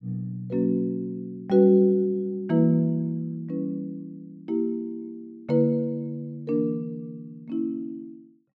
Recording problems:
none

